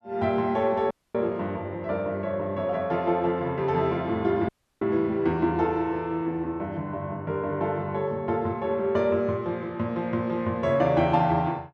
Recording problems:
dropout; at 1 s and at 4.5 s

